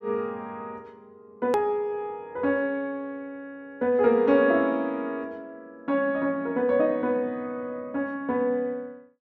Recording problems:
hard cut with a click; at 1.5 s

